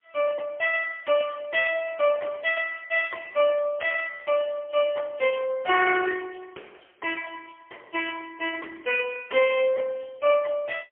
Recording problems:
phone line; 280 Hz to 3 kHz, AMR-NB, then MP3

